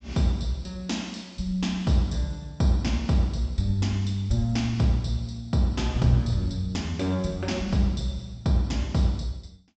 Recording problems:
treble cut off; nothing above 8 kHz

